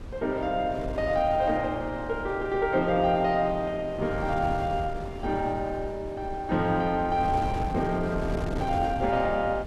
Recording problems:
wind noise; below 310 Hz, SNR 10 dB

